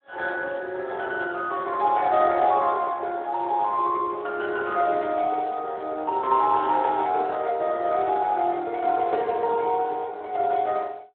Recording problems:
telephone audio; 370 Hz to 3.8 kHz, Speex

